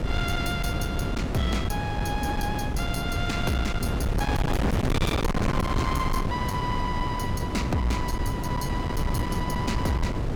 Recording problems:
distortion; hard clipping, signal-to-distortion ratio 7 dB
wind on the microphone; below 350 Hz, SNR -2 dB

